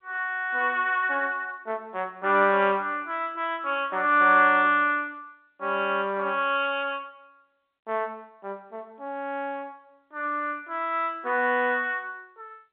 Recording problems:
telephone audio; 260 Hz to 3.6 kHz, G.711

